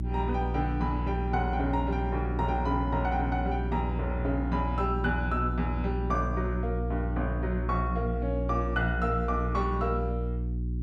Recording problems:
electrical hum; 60 Hz, harmonics up to 360 Hz, SNR 1 dB

